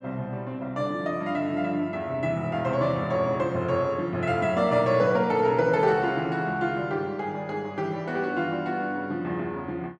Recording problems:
none

